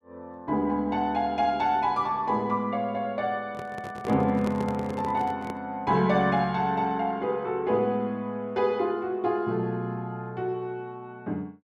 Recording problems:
handling noise; from 3.5 to 5.5 s; peak -3 dB vs average level

